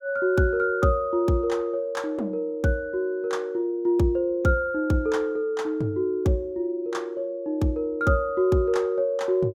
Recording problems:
none

